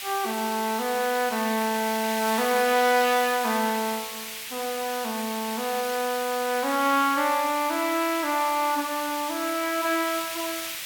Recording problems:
hiss; SNR 8 dB

